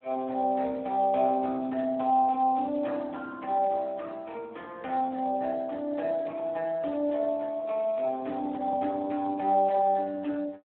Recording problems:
telephone audio; 220 Hz to 3.2 kHz, Speex

